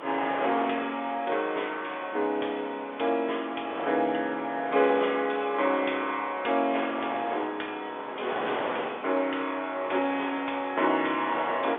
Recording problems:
phone line; 320 Hz to 3.5 kHz, G.711
wind on the microphone; below 1.4 kHz, SNR 9 dB

